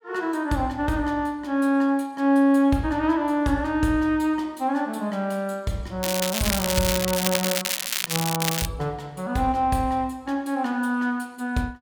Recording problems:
crackle; from 6 to 8.5 s; loose cable, SNR 1 dB

